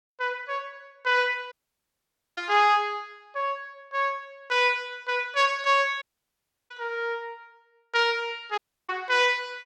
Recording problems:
audio cutting out; at 1.5 s for 1 s, at 6 s for 0.5 s and at 8.5 s

